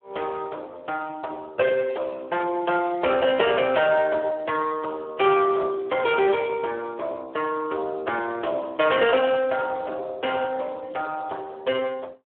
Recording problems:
phone line; 320 Hz to 3.7 kHz, Speex

